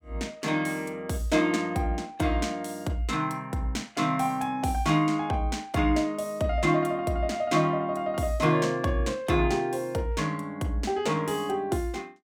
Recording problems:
none

